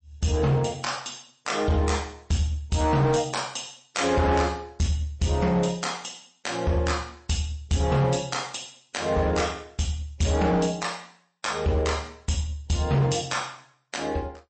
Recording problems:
lossy compression; MP3, log-spectral distance 6 dB, nothing above 8.2 kHz
distorted audio; hard clipping, signal-to-distortion ratio 10 dB

